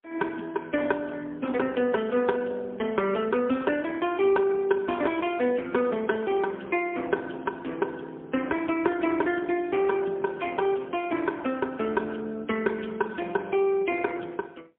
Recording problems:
telephone audio; 190 Hz to 3.4 kHz, AMR-NB, then MP3

